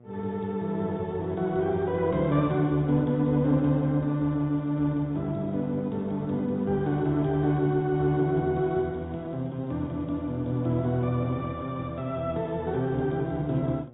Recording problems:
treble cut off; nothing above 3.8 kHz
lossy compression; MP2, then Opus, log-spectral distance 2 dB
hum; 60 Hz, harmonics up to 840 Hz, SNR 26 dB

